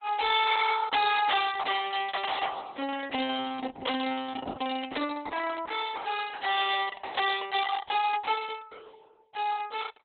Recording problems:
lossy compression; Opus, log-spectral distance 6 dB, nothing above 3.8 kHz
distortion; hard clipping, signal-to-distortion ratio 11 dB

